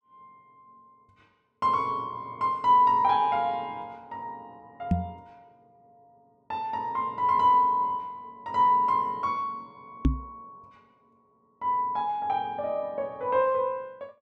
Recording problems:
knock on the microphone; at 5 s and at 10 s; peak +6 dB vs average level

